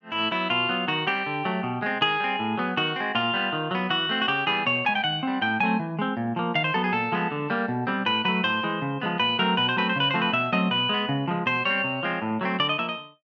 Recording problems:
none

